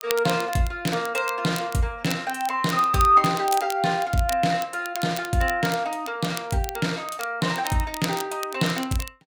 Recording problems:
crackle; vinyl, SNR 14 dB

